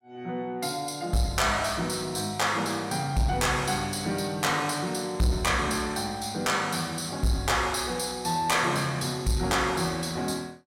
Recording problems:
distorted audio; soft clipping, signal-to-distortion ratio 11 dB

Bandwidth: 16 kHz